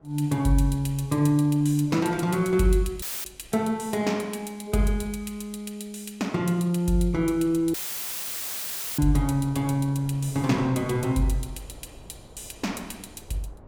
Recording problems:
wind on the microphone; below 500 Hz, SNR 24 dB
dropout; at 3 s and at 7.5 s for 1 s; filled with static

